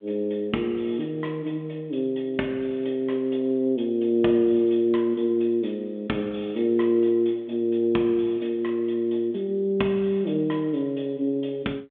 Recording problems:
telephone audio; 220 Hz to 3.6 kHz, G.726

